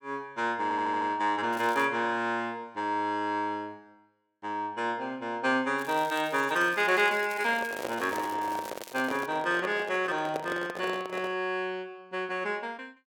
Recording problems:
stutter; at 0.5 s
crackle; at 1.5 s, from 6 to 8.5 s and at 8.5 s; loose cable, SNR 18 dB
microphone handling noise; from 7.5 to 11 s; peak -1 dB vs average level

